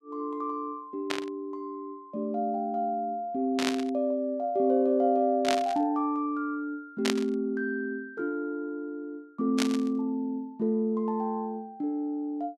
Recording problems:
static burst; 5 times, first at 1 s; peak +4 dB vs average level

